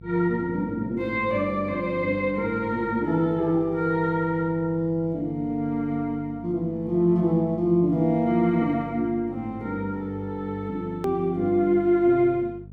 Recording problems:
hum; 50 Hz, harmonics up to 500 Hz, SNR 19 dB
edit click; at 11 s

